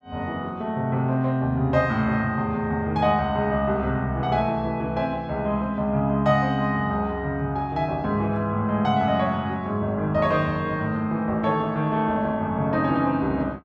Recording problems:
none

